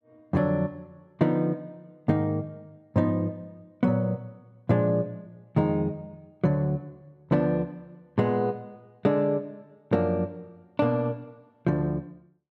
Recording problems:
none

